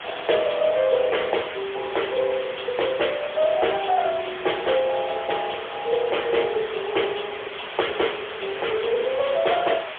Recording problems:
telephone audio; 340 Hz to 3.5 kHz, AMR-NB, then MP3
hiss; SNR 10 dB

